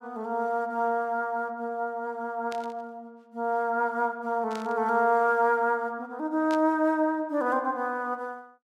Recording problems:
static burst; at 2.5 s, at 4.5 s and at 6.5 s; peak -11 dB vs average level

